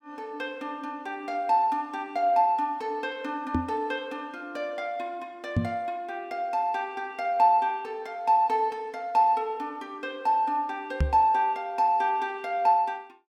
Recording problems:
microphone bump; at 3.5 s, at 5.5 s and at 11 s; peak +5 dB vs average level

